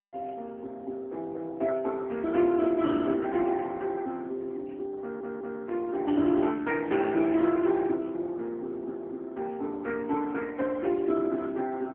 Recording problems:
phone line; 240 Hz to 3.4 kHz, AMR-NB
audio stuttering; at 5 s

